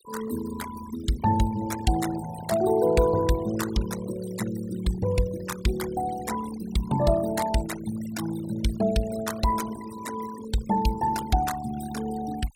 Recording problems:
denoising artefacts; signal-to-artefact ratio 13 dB

